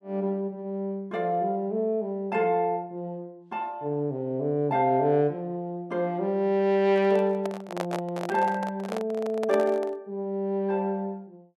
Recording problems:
handling noise; from 7 to 10 s; peak 0 dB vs average level

